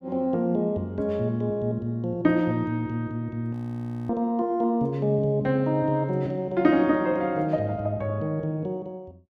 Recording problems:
audio freezing; at 3.5 s for 0.5 s

